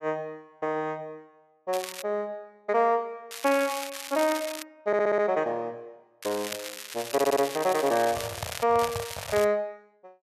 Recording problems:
crackling; 4 times, first at 1.5 s; loose cable, SNR 9 dB
audio stuttering; at 5 s and at 7 s
handling noise; from 8 to 9.5 s; peak -3 dB vs average level

